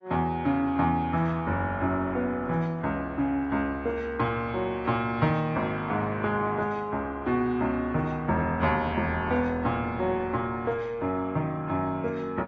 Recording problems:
lossy codec; AAC, log-spectral distance 2 dB, nothing above 6.9 kHz

